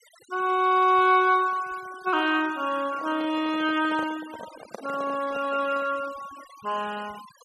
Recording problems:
noise reduction artefacts; signal-to-artefact ratio 20 dB
handling noise; from 3 to 6 s; peak -8 dB vs average level

